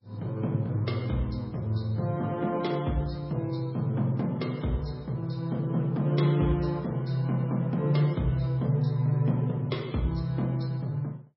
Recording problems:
codec artefacts; MP3, log-spectral distance 2 dB, nothing above 5.5 kHz

